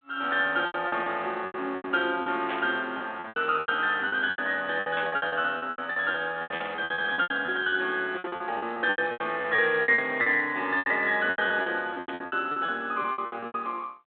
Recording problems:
phone line; 300 Hz to 3.6 kHz, G.726
lost packets; 21% of the sound replaced, filled with repeated pitch periods
burst of static; 4 times, first at 2.5 s; peak -4 dB vs average level

